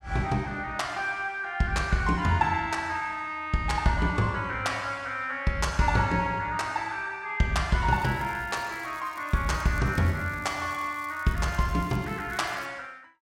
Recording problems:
crackling; from 8 to 10 s and from 10 to 13 s; loose cable, SNR 24 dB

